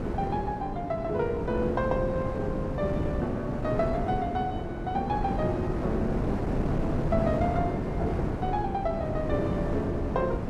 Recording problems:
wind on the microphone; below 400 Hz, SNR 0 dB

